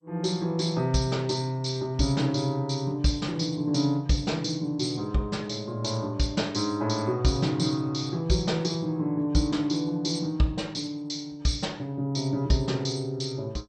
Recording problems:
lossy compression; MP2, log-spectral distance 3 dB, nothing above 8.5 kHz

